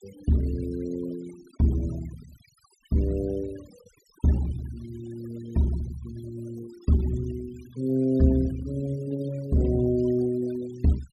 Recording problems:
noise reduction artefacts; signal-to-artefact ratio 21 dB

